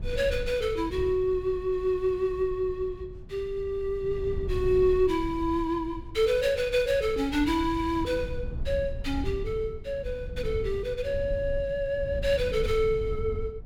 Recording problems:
rumble; below 90 Hz, SNR 11 dB

